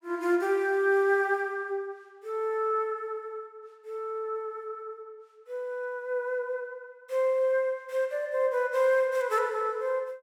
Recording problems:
none

